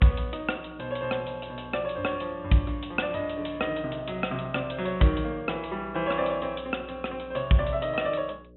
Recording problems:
treble cut off; nothing above 3.7 kHz
hum; 60 Hz, harmonics up to 600 Hz, SNR 20 dB

